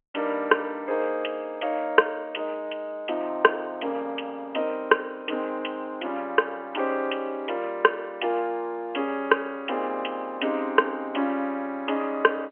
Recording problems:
telephone audio; 240 Hz to 3.2 kHz, G.711

